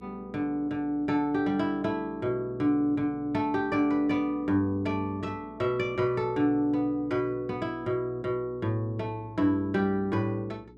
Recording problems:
hum; 60 Hz, harmonics up to 420 Hz, SNR 23 dB

